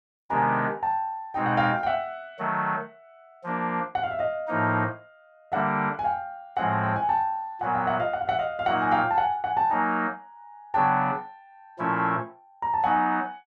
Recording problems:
none

